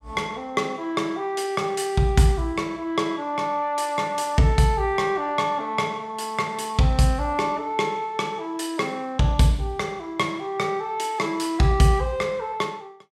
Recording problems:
none

